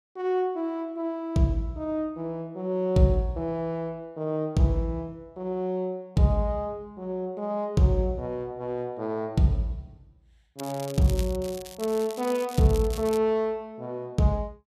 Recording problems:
crackling; from 11 to 13 s; loose cable, SNR 16 dB

